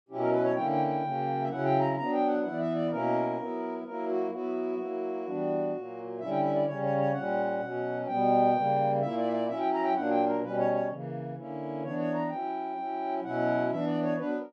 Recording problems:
none

